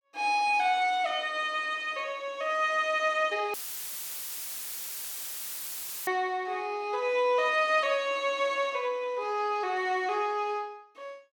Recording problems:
dropout; at 3.5 s for 2.5 s; filled with static

